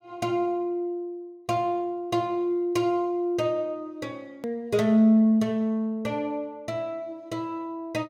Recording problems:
hard cut with a click; at 4.5 s

